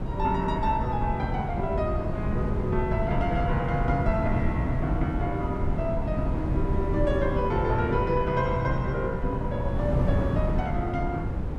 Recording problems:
wind on the microphone; below 180 Hz, SNR 1 dB

